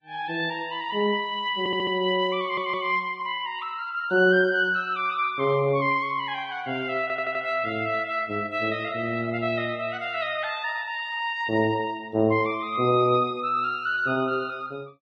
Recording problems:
lossy codec; Vorbis, log-spectral distance 2 dB
stutter; at 1.5 s, at 2.5 s and at 7 s

